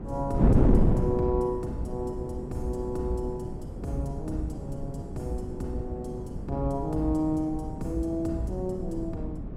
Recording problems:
hum; 50 Hz, harmonics up to 450 Hz, SNR 24 dB
wind on the microphone; below 250 Hz, SNR 0 dB

